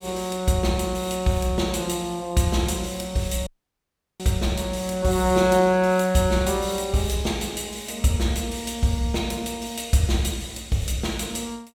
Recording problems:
audio cutting out; at 3.5 s for 0.5 s

